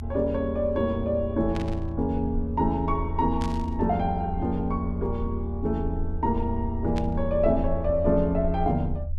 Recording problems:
low-frequency rumble; below 80 Hz, SNR 6 dB
burst of static; at 1.5 s, at 3.5 s and at 7 s; peak -8 dB vs average level

